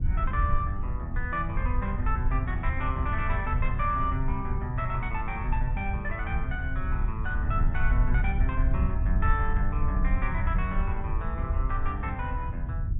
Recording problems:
treble missing; nothing above 4 kHz
rumble; below 78 Hz, SNR -3 dB

